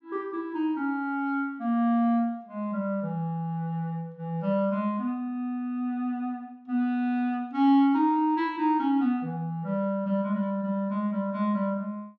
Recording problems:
none

